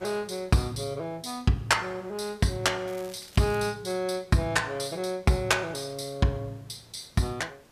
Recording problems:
hiss; slope -5 dB per octave, SNR 29 dB
crackle; at 3 s; loose cable, SNR 21 dB

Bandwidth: 14.5 kHz